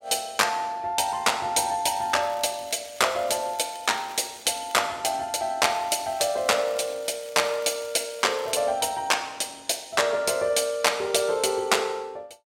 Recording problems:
crackling; from 2 to 5 s and from 5.5 to 8.5 s; loose cable, SNR 23 dB

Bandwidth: 16 kHz